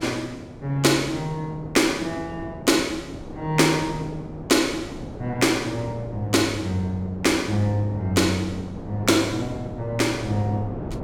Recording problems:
wind noise; below 450 Hz, SNR 13 dB

